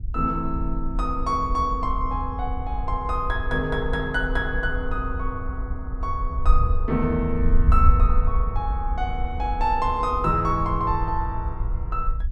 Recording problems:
wind noise; below 60 Hz, SNR 2 dB

